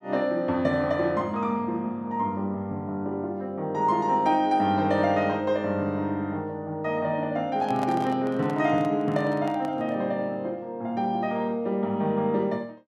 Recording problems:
microphone handling noise; from 7.5 to 10 s; peak -4 dB vs average level

